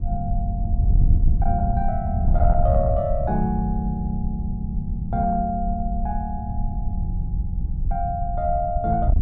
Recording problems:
distortion; soft clipping, signal-to-distortion ratio 12 dB
wind noise; below 84 Hz, SNR -1 dB

